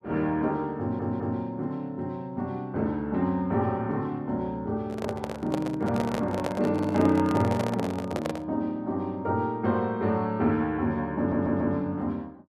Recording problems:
audio stuttering; at 1 s and at 11 s
handling noise; from 5 to 8.5 s; peak +1 dB vs average level

